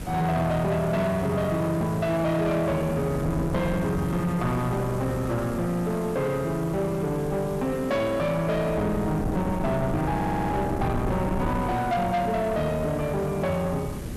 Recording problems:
distortion; soft clipping, signal-to-distortion ratio 10 dB
hiss; slope -2 dB per octave, SNR 18 dB
wind on the microphone; below 350 Hz, SNR 8 dB
stutter; at 10 s

